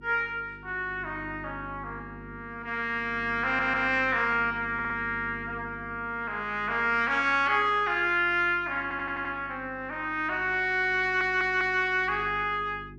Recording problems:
electrical hum; 50 Hz, harmonics up to 400 Hz, SNR 20 dB
stutter; 4 times, first at 3.5 s

